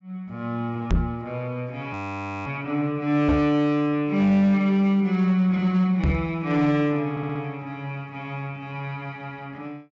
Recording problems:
treble cut off; nothing above 7.6 kHz
distortion; hard clipping, signal-to-distortion ratio 12 dB
knock on the microphone; at 1 s, at 3.5 s and at 6 s; peak +5 dB vs average level
frozen audio; at 2 s for 0.5 s
stutter; at 7 s

